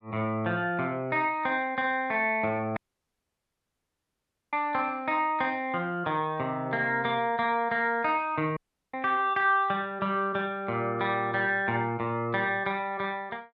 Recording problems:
dropout; at 3 s for 2 s and at 8.5 s

